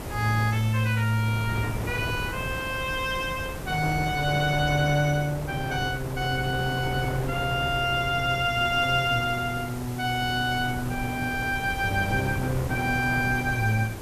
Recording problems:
background hiss; slope 0 dB per octave, SNR 18 dB
wind on the microphone; below 540 Hz, SNR 10 dB

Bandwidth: 14.5 kHz